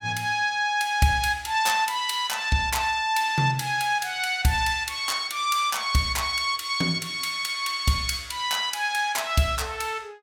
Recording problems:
none

